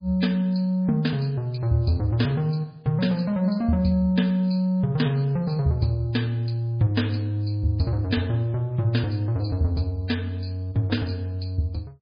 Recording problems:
lossy codec; MP3, log-spectral distance 2 dB, nothing above 5 kHz

